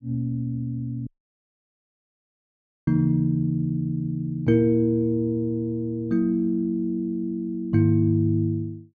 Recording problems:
dropout; at 1 s for 2 s

